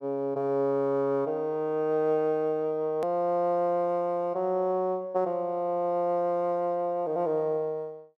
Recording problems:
click at an edit; at 3 s

